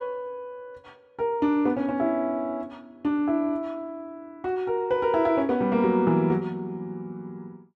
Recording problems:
none

